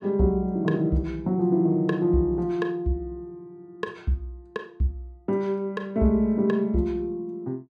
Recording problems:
none

